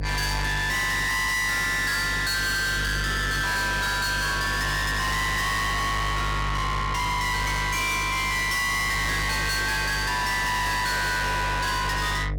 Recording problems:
distorted audio; soft clipping, signal-to-distortion ratio 6 dB
electrical hum; 50 Hz, harmonics up to 4.6 kHz, SNR 4 dB

